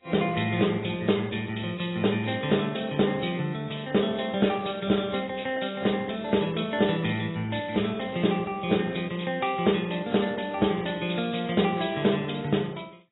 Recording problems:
lossy compression; AAC, log-spectral distance 8 dB, nothing above 3.8 kHz

